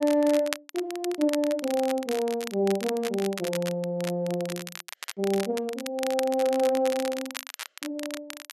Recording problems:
crackle; vinyl, SNR 11 dB

